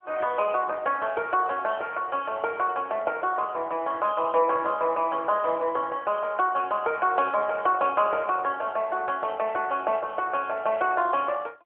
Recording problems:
telephone audio; 300 Hz to 3.3 kHz, AMR-NB

